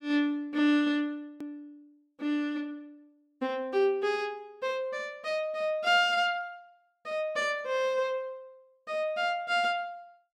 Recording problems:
edit click; at 1.5 s

